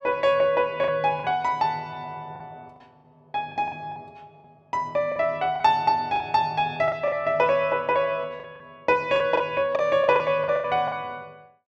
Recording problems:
lost packets; 9% of the sound replaced, filled with the last packet

